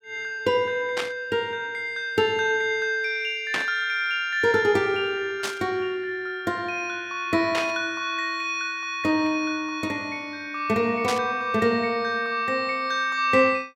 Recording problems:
static burst; 5 times, first at 1 s; peak +1 dB vs average level

